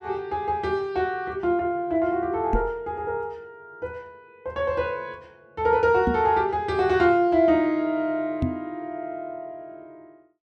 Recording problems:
microphone bump; at 2.5 s, at 6 s and at 8.5 s; peak +3 dB vs average level

